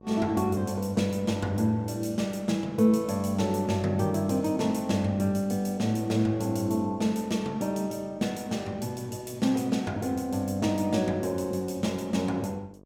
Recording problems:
electrical hum; 50 Hz, harmonics up to 1.2 kHz, SNR 25 dB

